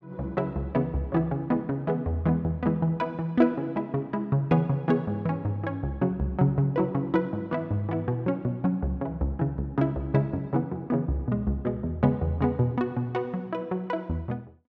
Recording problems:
none

